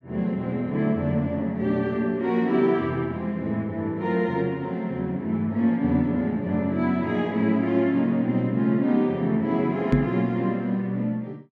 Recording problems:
knock on the microphone; at 10 s; peak +7 dB vs average level

